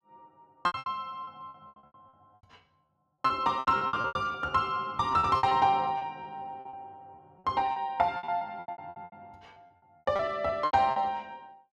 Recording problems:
packet loss; 20% of the sound replaced, filled with repeated pitch periods

